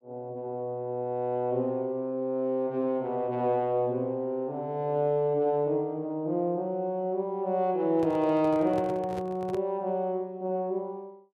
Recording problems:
microphone handling noise; from 8 to 9.5 s; peak -7 dB vs average level

